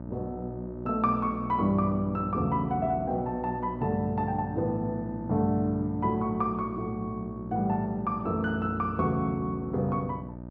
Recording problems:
hum; 60 Hz, harmonics up to 960 Hz, SNR 11 dB

